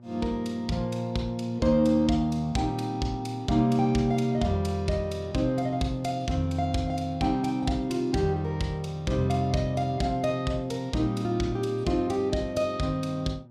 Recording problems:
hum; 60 Hz, harmonics up to 1.2 kHz, SNR 24 dB

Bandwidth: 15.5 kHz